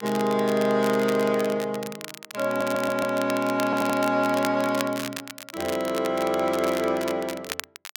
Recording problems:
crackling; vinyl, SNR 12 dB
stutter; at 2.5 s and at 3.5 s

